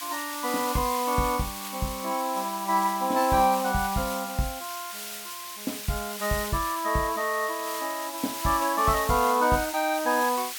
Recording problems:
hiss; SNR 8 dB

